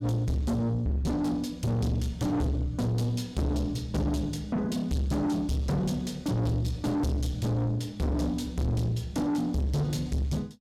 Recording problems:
distortion; soft clipping, signal-to-distortion ratio 6 dB

